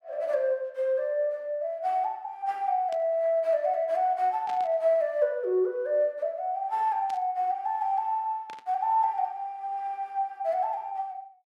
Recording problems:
static burst; 4 times, first at 3 s; peak -12 dB vs average level

